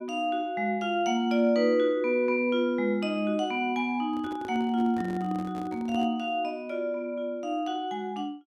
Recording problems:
microphone handling noise; from 4 to 6 s; peak -6 dB vs average level

